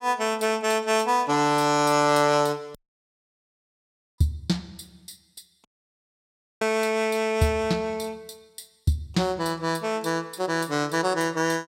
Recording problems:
dropout; at 3 s for 1.5 s and at 5.5 s for 1 s

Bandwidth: 16 kHz